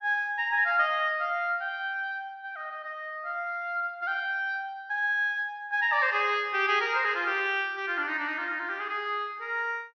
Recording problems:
treble cut off; nothing above 6.3 kHz

